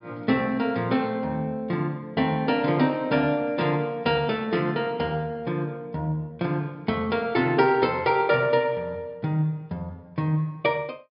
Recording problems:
treble cut off; nothing above 5.1 kHz

